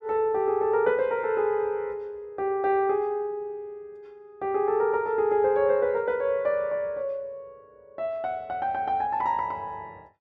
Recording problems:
none

